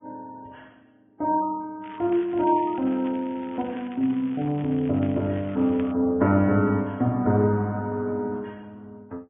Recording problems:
treble missing; nothing above 3.3 kHz
lossy codec; Vorbis, log-spectral distance 2 dB
crackle; from 2 to 6 s; loose cable, SNR 24 dB

